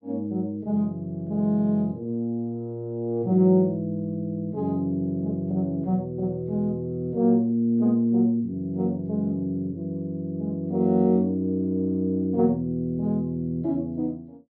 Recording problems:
low-pass filter; nothing above 5.5 kHz

